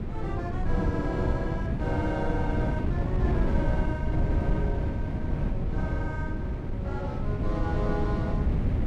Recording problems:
wind on the microphone; below 170 Hz, SNR -5 dB

